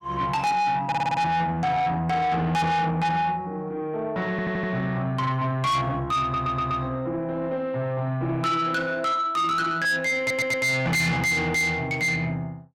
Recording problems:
distortion; soft clipping, signal-to-distortion ratio 7 dB
stutter; 4 times, first at 1 s

